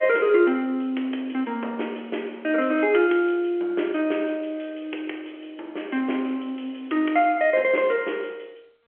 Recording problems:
telephone audio; 280 Hz to 3.3 kHz, G.711

